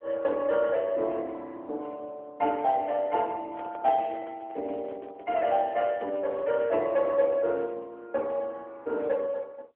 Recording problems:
phone line; 260 Hz to 3.6 kHz, AMR-NB
handling noise; from 3.5 to 6.5 s; peak -11 dB vs average level

